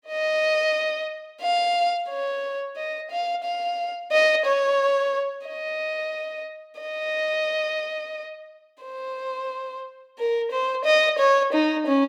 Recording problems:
none

